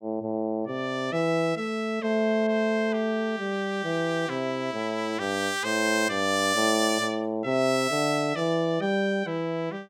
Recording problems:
none

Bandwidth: 17 kHz